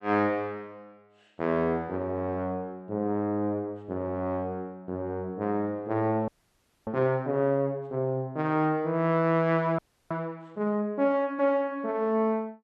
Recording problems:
audio freezing; at 6.5 s for 0.5 s and at 10 s

